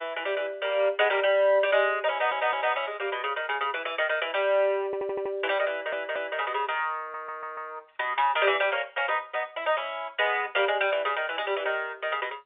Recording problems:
phone line; 340 Hz to 3.6 kHz, G.711
stutter; 4 times, first at 2 s

